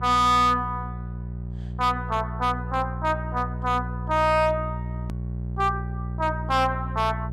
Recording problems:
distortion; hard clipping, signal-to-distortion ratio 7 dB
mains hum; 60 Hz, harmonics up to 420 Hz, SNR 8 dB
hard cut with a click; at 5 s

